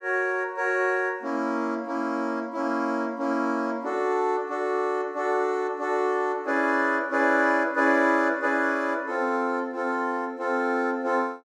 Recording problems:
none

